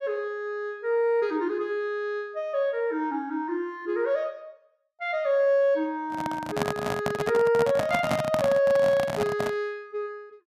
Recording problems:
microphone handling noise; from 6 to 9.5 s; peak +3 dB vs average level

